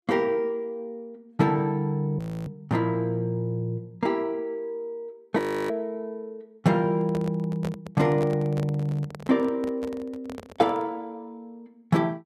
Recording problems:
frozen audio; at 2 s and at 5.5 s
handling noise; from 7 to 11 s; peak -4 dB vs average level

